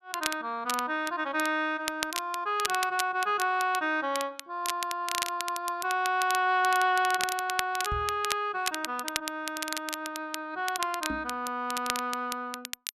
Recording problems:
crackling; vinyl, SNR 7 dB
microphone bump; at 8 s and at 11 s; peak -2 dB vs average level

